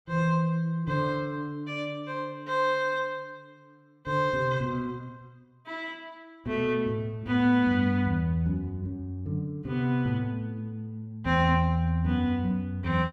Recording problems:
none

